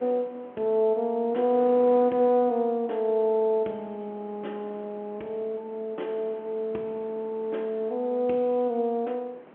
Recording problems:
phone line; 220 Hz to 3.6 kHz, G.711
wind noise; below 940 Hz, SNR 23 dB

